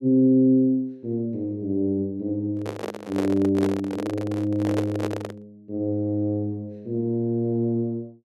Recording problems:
handling noise; from 2.5 to 5.5 s; peak 0 dB vs average level

